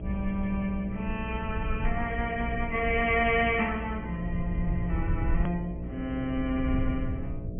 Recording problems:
treble cut off; nothing above 3 kHz
lossy compression; Opus, then AAC, log-spectral distance 2 dB
hum; 60 Hz, harmonics up to 660 Hz, SNR 8 dB
low-frequency rumble; below 86 Hz, SNR 6 dB
hard cut with a click; at 5.5 s

